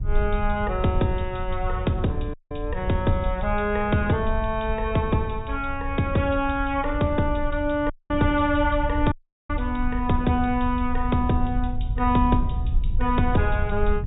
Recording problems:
low-pass filter; nothing above 4 kHz
rumble; below 68 Hz, SNR 6 dB
audio cutting out; at 2.5 s, at 8 s and at 9 s

